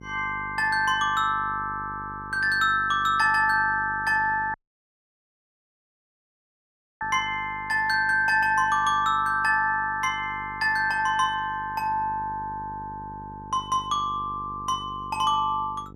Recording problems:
hum; 50 Hz, harmonics up to 900 Hz, SNR 20 dB
dropout; at 4.5 s for 2.5 s

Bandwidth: 15 kHz